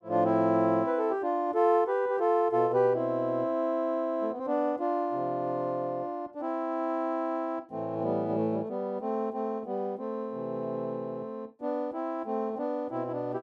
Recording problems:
none

